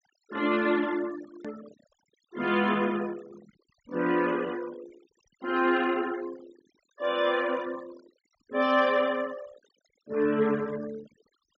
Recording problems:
treble missing; nothing above 8 kHz
denoising artefacts; signal-to-artefact ratio 19 dB
hard cut with a click; at 1.5 s

